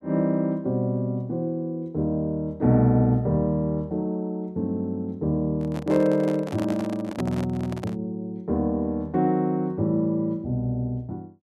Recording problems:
handling noise; from 5.5 to 8 s; peak -3 dB vs average level

